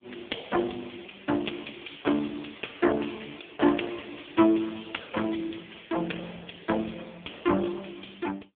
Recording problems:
phone line; 220 Hz to 3.1 kHz, AMR-NB

